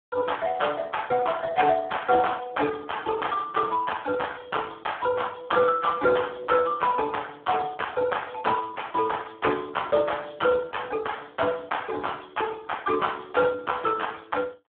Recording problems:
telephone audio; 320 Hz to 3.3 kHz, Speex

